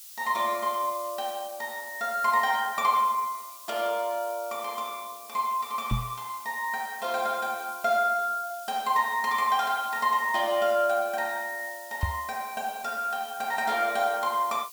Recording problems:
hiss; SNR 15 dB
microphone bump; at 6 s and at 12 s; peak +4 dB vs average level

